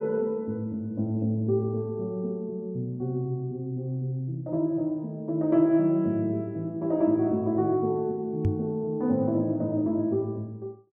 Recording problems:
microphone bump; at 8.5 s; peak +5 dB vs average level

